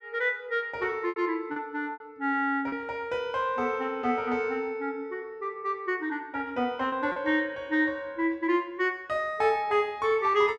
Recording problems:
lost packets; 3% of the sound replaced, filled with repeated pitch periods

